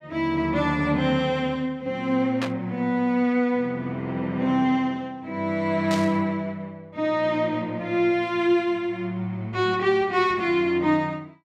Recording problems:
burst of static; at 2.5 s and at 6 s; peak -3 dB vs average level

